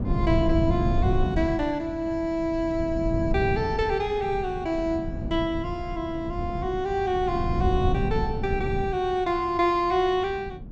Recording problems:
low-pass filter; nothing above 8 kHz
wind on the microphone; below 170 Hz, SNR 4 dB

